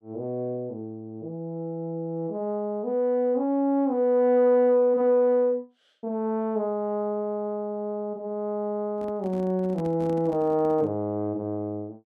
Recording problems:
handling noise; from 9 to 11 s; peak -11 dB vs average level

